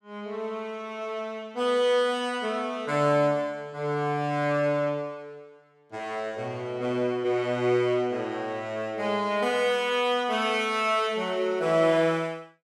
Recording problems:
none

